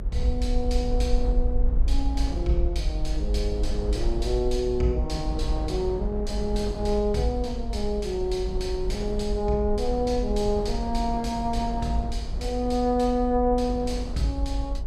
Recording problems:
rumble; below 52 Hz, SNR 3 dB
wind noise; below 460 Hz, SNR 12 dB

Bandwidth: 14.5 kHz